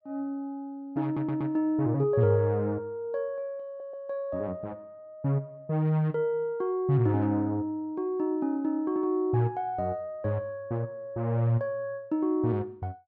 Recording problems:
stutter; at 1 s and at 3.5 s

